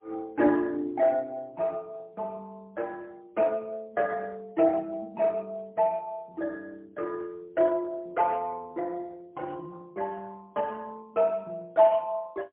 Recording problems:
phone line; 220 Hz to 2.9 kHz, AMR-NB, then MP3

